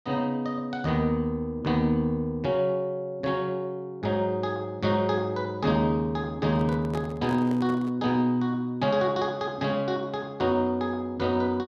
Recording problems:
handling noise; from 6.5 to 8 s; peak -6 dB vs average level

